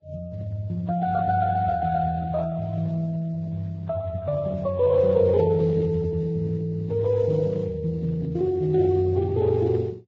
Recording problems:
codec artefacts; Speex, then Vorbis, log-spectral distance 2 dB

